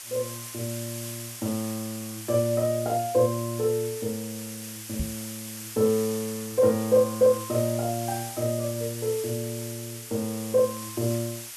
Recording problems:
background hiss; slope +3 dB per octave, SNR 10 dB
knock on the microphone; at 5 s; peak 0 dB vs average level

